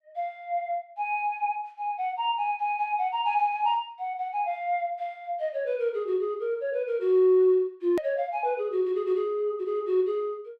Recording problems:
hard cut with a click; at 8 s

